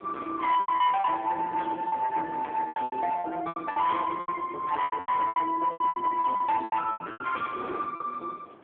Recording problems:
phone line; 280 Hz to 3.5 kHz, AMR-NB
distortion; soft clipping, signal-to-distortion ratio 11 dB
wind noise; below 850 Hz, SNR 21 dB
packet loss; 16% of the sound replaced, filled with repeated pitch periods

